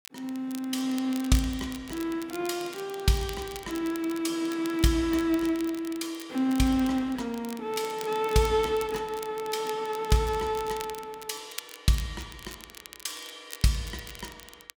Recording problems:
crackle; vinyl, SNR 16 dB

